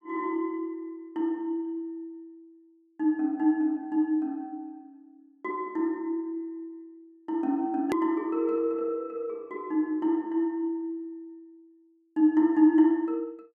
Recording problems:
edit click; at 8 s

